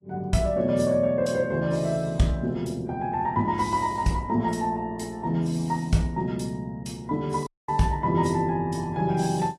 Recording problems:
lossy codec; AAC, log-spectral distance 2 dB, nothing above 12 kHz
dropout; at 7.5 s

